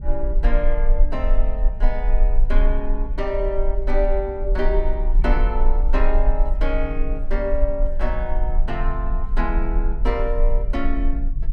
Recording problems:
low-frequency rumble; below 38 Hz, strongest tone 24 Hz, SNR -3 dB
wind noise; below 120 Hz, SNR 9 dB

